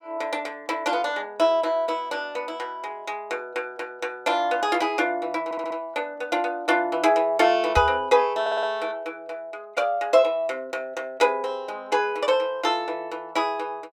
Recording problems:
stutter; at 5.5 s and at 8.5 s
microphone bump; at 8 s; peak +1 dB vs average level

